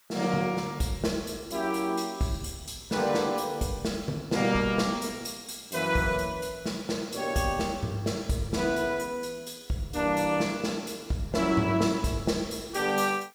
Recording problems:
hiss; SNR 30 dB

